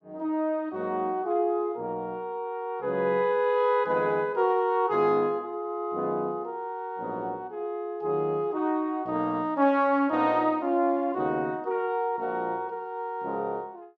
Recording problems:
none

